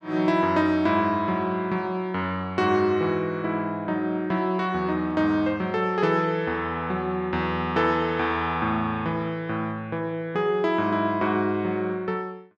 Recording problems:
none

